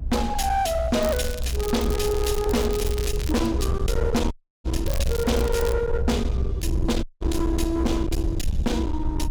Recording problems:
distorted audio; hard clipping, uneven, signal-to-distortion ratio 7 dB
low-frequency rumble; below 86 Hz, SNR 2 dB
crackling; from 1 to 3.5 s and at 5 s; loose cable, SNR 11 dB
audio cutting out; at 4.5 s and at 7 s

